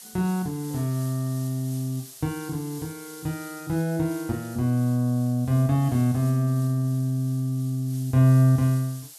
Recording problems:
background hiss; SNR 19 dB

